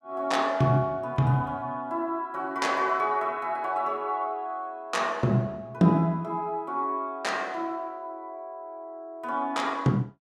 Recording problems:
none

